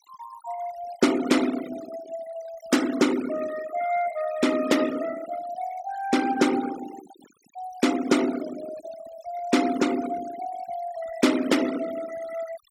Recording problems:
noise reduction artefacts; signal-to-artefact ratio 14 dB

